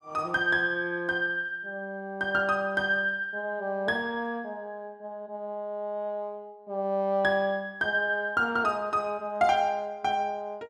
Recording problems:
none

